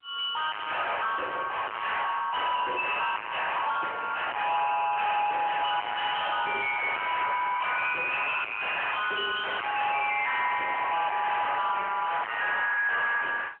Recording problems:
telephone audio; 340 Hz to 3.2 kHz, AMR-NB
distortion; soft clipping, signal-to-distortion ratio 5 dB

